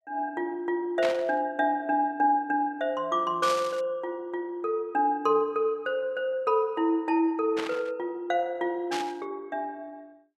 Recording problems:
burst of static; 4 times, first at 1 s; peak -1 dB vs average level

